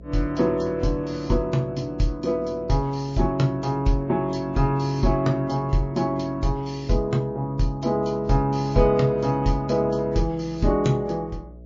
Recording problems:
lossy compression; MP3, log-spectral distance 2 dB, nothing above 6.2 kHz
hum; 60 Hz, harmonics up to 660 Hz, SNR 22 dB

